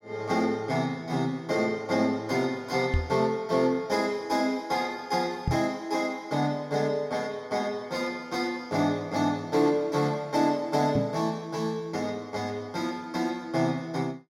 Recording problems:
microphone thump; at 3 s, at 5.5 s and at 11 s; peak +4 dB vs average level

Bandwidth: 16.5 kHz